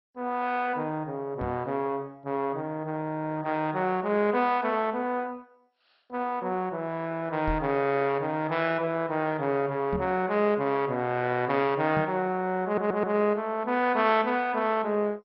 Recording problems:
lossy codec; MP2, log-spectral distance 3 dB, nothing above 5.5 kHz
microphone thump; 4 times, first at 1.5 s; peak -2 dB vs average level
audio stuttering; at 13 s

